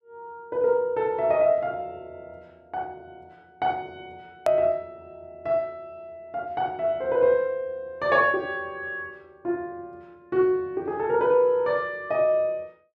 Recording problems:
hard cut with a click; at 4.5 s

